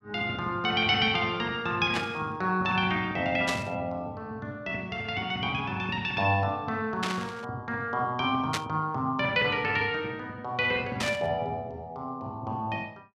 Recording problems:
static burst; 5 times, first at 2 s; peak +3 dB vs average level

